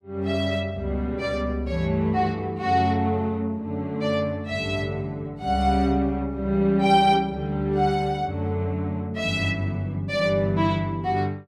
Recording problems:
none

